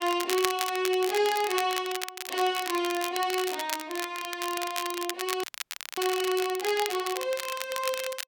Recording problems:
crackle; vinyl, SNR 6 dB
frozen audio; at 5.5 s for 0.5 s

